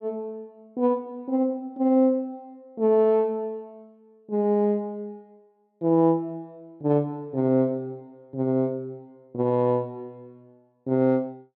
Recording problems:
none

